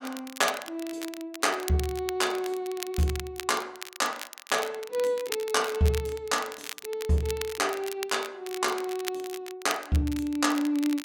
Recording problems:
crackling; vinyl, SNR 11 dB

